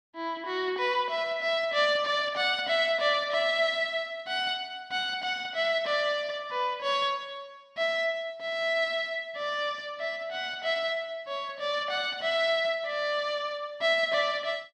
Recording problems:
none

